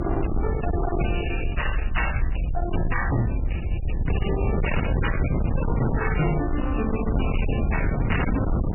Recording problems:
lossy compression; MP3, log-spectral distance 6 dB, nothing above 2.9 kHz
distortion; soft clipping, signal-to-distortion ratio 6 dB
rumble; below 82 Hz, SNR 2 dB
wind on the microphone; below 200 Hz, SNR 1 dB

